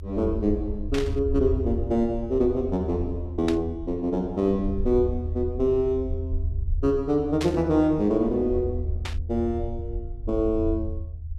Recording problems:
rumble; below 80 Hz, SNR 7 dB
static burst; 4 times, first at 1 s; peak -3 dB vs average level

